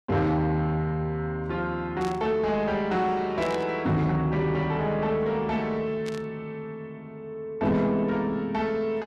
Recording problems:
distorted audio; soft clipping, signal-to-distortion ratio 12 dB
burst of static; at 2 s, at 3.5 s and at 6 s; peak -9 dB vs average level

